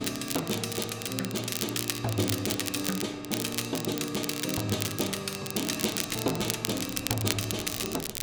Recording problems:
hum; 60 Hz, harmonics up to 840 Hz, SNR 21 dB
wind noise; below 550 Hz, SNR 21 dB
crackle; vinyl, SNR 2 dB

